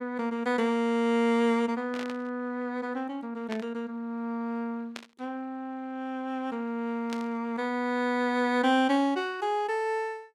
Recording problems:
static burst; 4 times, first at 2 s; peak -6 dB vs average level

